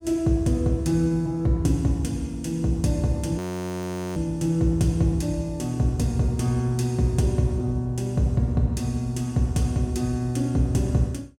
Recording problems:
frozen audio; at 3.5 s for 1 s

